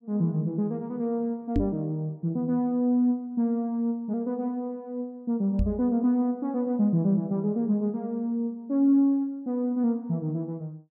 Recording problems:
knock on the microphone; at 1.5 s and at 5.5 s; peak +5 dB vs average level

